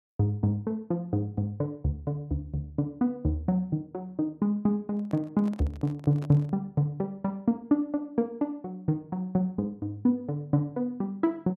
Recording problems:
handling noise; from 5 to 6.5 s; peak -10 dB vs average level

